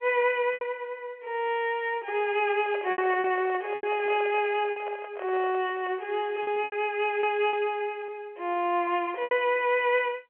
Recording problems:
telephone audio; 300 Hz to 3.3 kHz, G.711
packet loss; 7% of the sound replaced, filled with repeated pitch periods
handling noise; from 2.5 to 6 s; peak -8 dB vs average level

